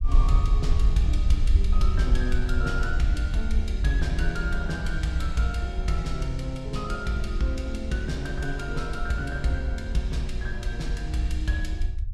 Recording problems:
low-frequency rumble; below 60 Hz, SNR -1 dB

